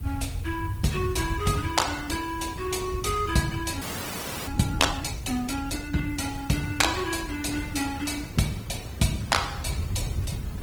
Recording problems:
codec artefacts; Opus, then Opus, log-spectral distance 5 dB
background hiss; slope -1 dB per octave, SNR 24 dB
low-frequency rumble; below 110 Hz, SNR 8 dB
wind on the microphone; below 410 Hz, SNR 19 dB
audio freezing; at 4 s for 0.5 s

